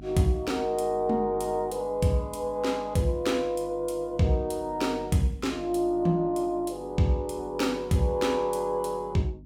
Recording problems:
hum; 50 Hz, harmonics up to 300 Hz, SNR 21 dB

